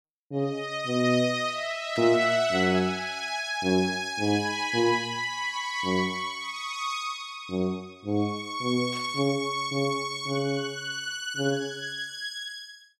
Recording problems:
static burst; at 2 s and at 9 s; peak -12 dB vs average level

